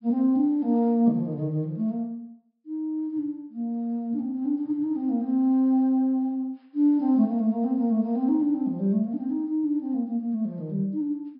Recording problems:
low-pass filter; nothing above 5.2 kHz

